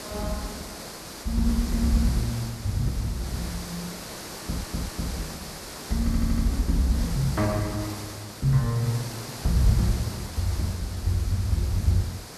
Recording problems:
hiss; SNR 10 dB
stutter; at 4.5 s and at 6 s

